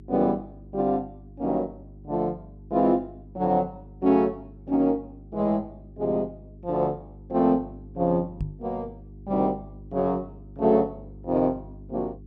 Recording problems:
hum; 50 Hz, harmonics up to 400 Hz, SNR 19 dB
microphone bump; at 8.5 s; peak -1 dB vs average level

